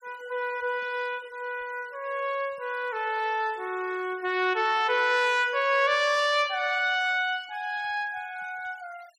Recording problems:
denoising artefacts; signal-to-artefact ratio 23 dB

